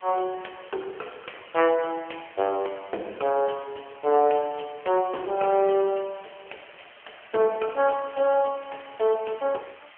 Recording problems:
telephone audio; 300 Hz to 3 kHz, AMR-NB
background hiss; SNR 23 dB

